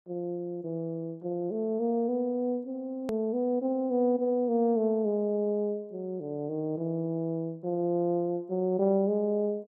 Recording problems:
click at an edit; at 3 s

